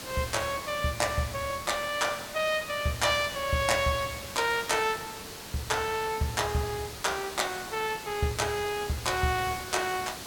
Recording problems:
background hiss; slope -2 dB per octave, SNR 10 dB

